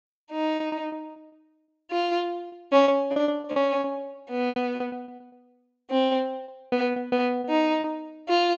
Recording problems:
treble missing; nothing above 8 kHz
packet loss; 14% of the sound replaced, filled with repeated pitch periods

